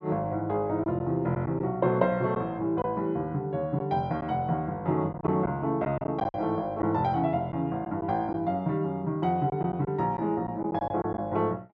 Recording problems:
lost packets; 5% of the sound replaced, filled with silence

